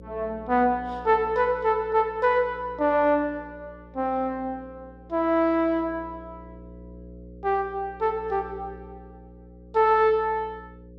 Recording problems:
electrical hum; 60 Hz, harmonics up to 540 Hz, SNR 21 dB

